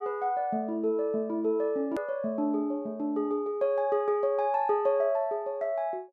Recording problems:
edit click; at 2 s

